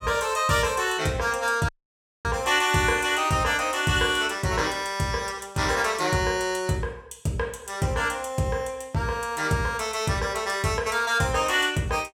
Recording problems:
dropout; at 1.5 s for 0.5 s

